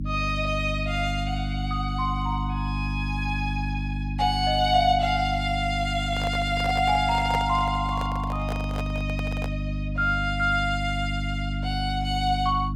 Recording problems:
electrical hum; 50 Hz, harmonics up to 300 Hz, SNR 4 dB
microphone handling noise; from 6 to 9.5 s; peak -1 dB vs average level

